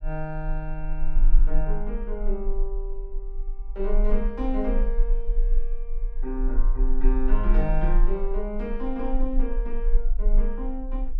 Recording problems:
rumble; below 32 Hz, strongest tone 18 Hz, SNR -4 dB

